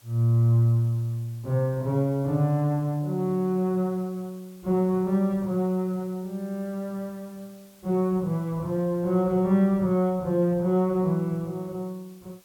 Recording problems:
background hiss; slope -1 dB per octave, SNR 30 dB

